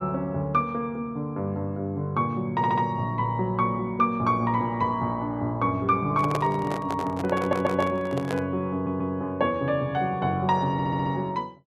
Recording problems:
audio stuttering; 4 times, first at 2.5 s
microphone handling noise; from 6 to 8.5 s; peak +1 dB vs average level

